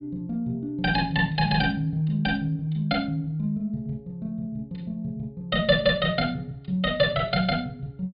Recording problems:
treble cut off; nothing above 4.9 kHz

